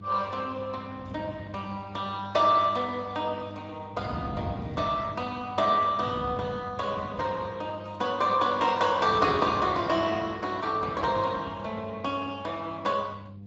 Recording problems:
lossy compression; Speex, log-spectral distance 4 dB
hum; 50 Hz, harmonics up to 500 Hz, SNR 17 dB
wind noise; below 270 Hz, SNR 13 dB

